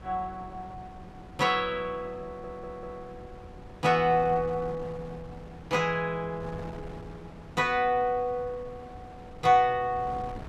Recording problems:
wind on the microphone; below 520 Hz, SNR 18 dB
stutter; at 2.5 s

